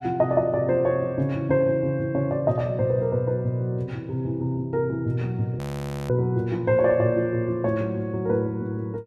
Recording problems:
frozen audio; at 5.5 s for 0.5 s

